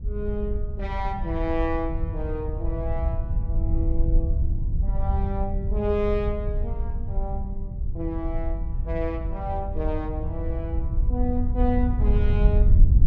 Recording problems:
wind on the microphone; below 74 Hz, SNR -3 dB

